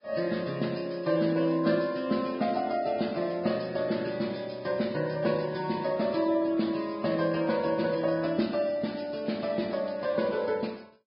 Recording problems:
low-pass filter; nothing above 5.2 kHz
lossy compression; Vorbis, log-spectral distance 4 dB

